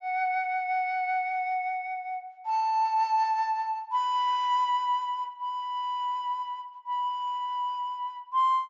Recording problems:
treble cut off; nothing above 7.4 kHz

